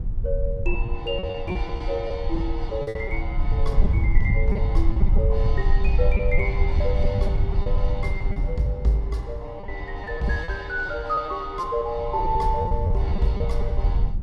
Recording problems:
low-frequency rumble; below 68 Hz, SNR -2 dB
packet loss; 9% of the sound replaced, filled with repeated pitch periods

